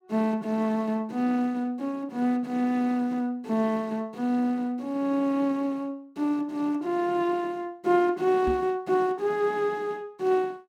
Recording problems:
microphone bump; at 8.5 s; peak -2 dB vs average level

